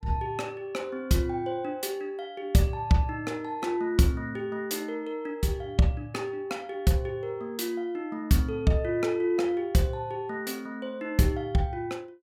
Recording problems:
none

